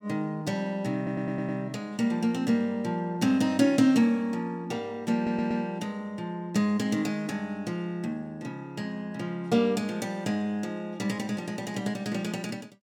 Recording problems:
stutter; at 1 s and at 5 s

